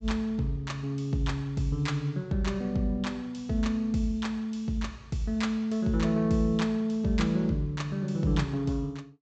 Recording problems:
treble cut off; nothing above 8 kHz

